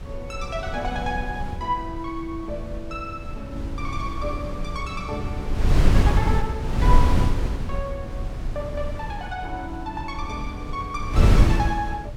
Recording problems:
wind noise; below 110 Hz, SNR -5 dB

